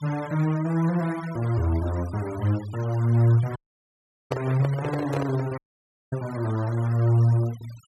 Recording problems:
noise reduction artefacts; signal-to-artefact ratio 20 dB
dropout; at 3.5 s for 0.5 s and at 5.5 s for 0.5 s
handling noise; from 4.5 to 5.5 s; peak +1 dB vs average level

